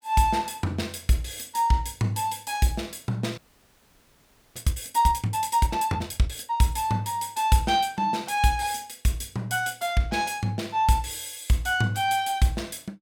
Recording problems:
audio freezing; at 3.5 s for 1 s

